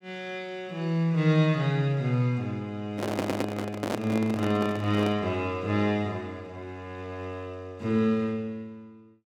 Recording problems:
microphone handling noise; from 3 to 5 s; peak +3 dB vs average level
audio stuttering; at 3 s

